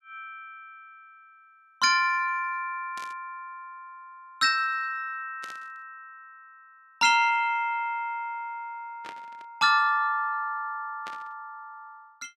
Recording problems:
burst of static; 4 times, first at 3 s; peak -12 dB vs average level

